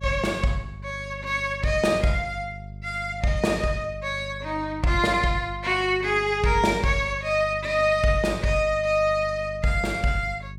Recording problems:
electrical hum; 50 Hz, harmonics up to 400 Hz, SNR 15 dB

